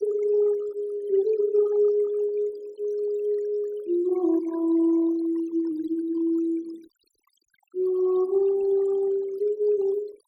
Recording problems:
noise reduction artefacts; signal-to-artefact ratio 22 dB

